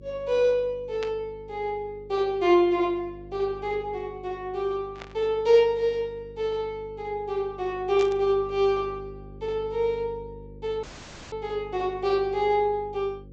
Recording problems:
low-pass filter; nothing above 8 kHz
hum; 50 Hz, harmonics up to 550 Hz, SNR 20 dB
static burst; at 1 s, at 5 s and at 8 s; peak -8 dB vs average level
audio cutting out; at 11 s

